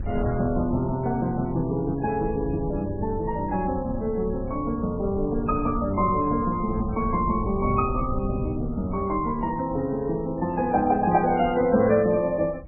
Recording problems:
codec artefacts; MP3, log-spectral distance 2 dB, nothing above 2.4 kHz
wind noise; below 120 Hz, SNR 11 dB

